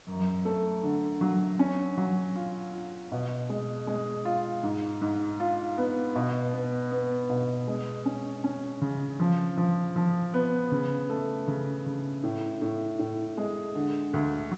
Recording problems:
treble missing; nothing above 8 kHz
hiss; slope -3 dB per octave, SNR 23 dB

